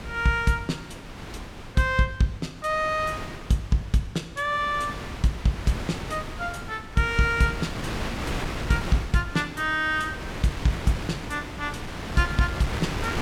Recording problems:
wind on the microphone; below 1.6 kHz, SNR 8 dB

